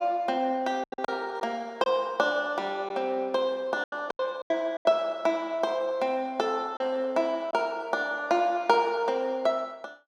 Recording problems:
packet loss; 6% of the sound replaced, filled with silence

